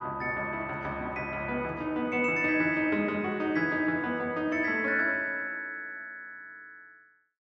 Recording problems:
none

